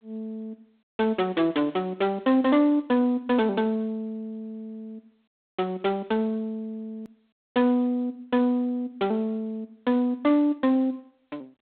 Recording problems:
phone line; 220 Hz to 3.7 kHz, G.726
hard cut with a click; at 7 s

